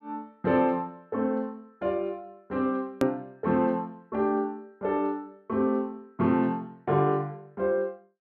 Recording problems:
edit click; at 3 s

